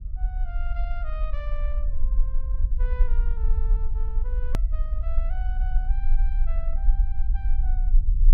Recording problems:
low-frequency rumble; below 42 Hz, strongest tone 20 Hz, SNR -17 dB
edit click; at 4.5 s

